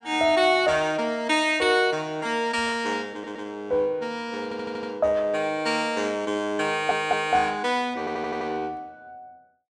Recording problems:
stutter; 4 times, first at 3 s

